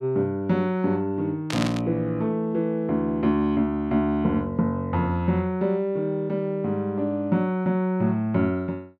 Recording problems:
burst of static; at 1.5 s; peak -1 dB vs average level

